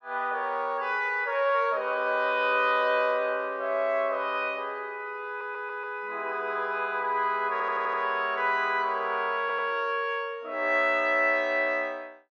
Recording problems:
audio stuttering; at 5.5 s, at 7.5 s and at 9.5 s

